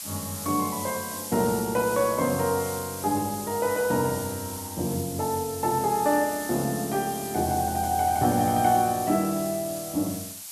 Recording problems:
background hiss; slope +4 dB per octave, SNR 9 dB

